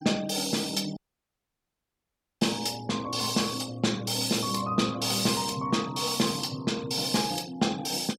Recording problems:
noise reduction artefacts; signal-to-artefact ratio 20 dB
audio cutting out; at 1 s for 1.5 s

